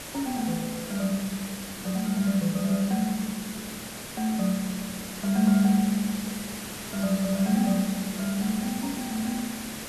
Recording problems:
hiss; slope -3 dB per octave, SNR 9 dB

